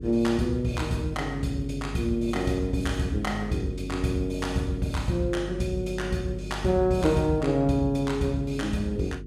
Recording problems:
hum; 50 Hz, harmonics up to 450 Hz, SNR 10 dB

